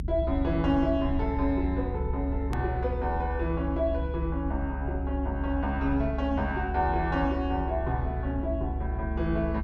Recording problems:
low-frequency rumble; below 70 Hz, strongest tone 68 Hz, SNR 3 dB
click at an edit; at 2.5 s

